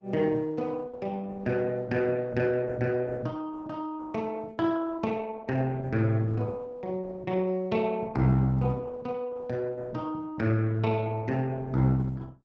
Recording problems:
codec artefacts; Opus, log-spectral distance 3 dB

